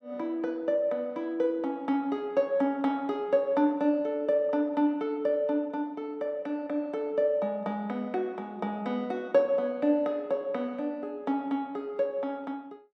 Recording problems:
none

